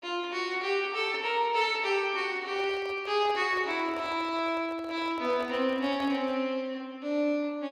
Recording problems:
microphone handling noise; from 2.5 to 6.5 s; peak -10 dB vs average level

